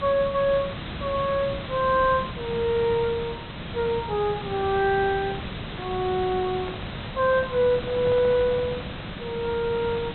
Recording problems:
treble missing; nothing above 4 kHz
hiss; SNR 9 dB
microphone handling noise; from 6.5 to 9 s; peak -11 dB vs average level

